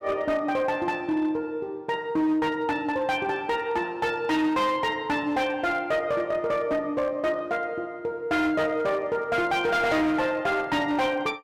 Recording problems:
distortion; hard clipping, signal-to-distortion ratio 12 dB

